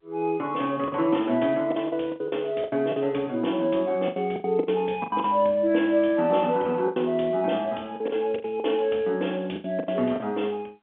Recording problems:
telephone audio; 220 Hz to 3.5 kHz, G.711
lost packets; 11% of the sound replaced, filled with the last packet

